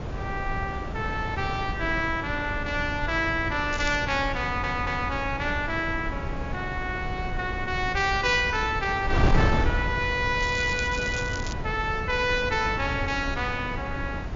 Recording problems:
treble cut off; nothing above 7.2 kHz
wind on the microphone; below 290 Hz, SNR 5 dB
crackle; at 3.5 s and from 10 to 12 s; loose cable, SNR 13 dB
audio stuttering; at 4.5 s

